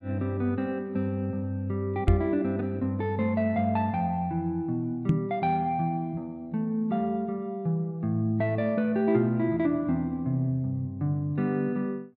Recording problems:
microphone bump; at 2 s and at 5 s; peak +9 dB vs average level

